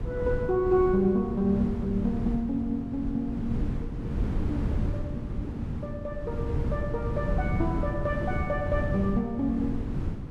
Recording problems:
wind on the microphone; below 190 Hz, SNR 3 dB

